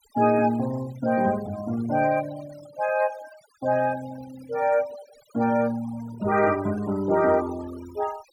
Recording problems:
noise reduction artefacts; signal-to-artefact ratio 19 dB

